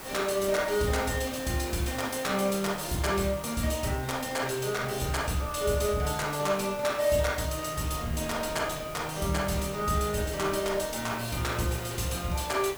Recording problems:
background hiss; slope -4 dB per octave, SNR 13 dB
wind on the microphone; below 430 Hz, SNR 19 dB

